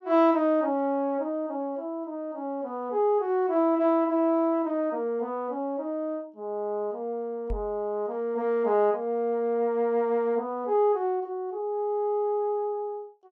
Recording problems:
knock on the microphone; at 7.5 s; peak -4 dB vs average level

